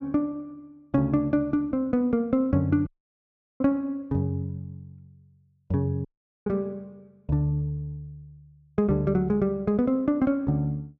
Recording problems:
dropout; at 3 s for 0.5 s and at 6 s

